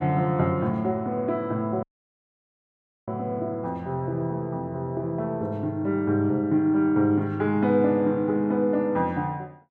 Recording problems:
dropout; at 2 s for 1 s

